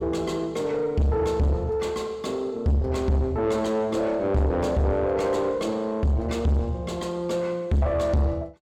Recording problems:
distortion; soft clipping, signal-to-distortion ratio 7 dB

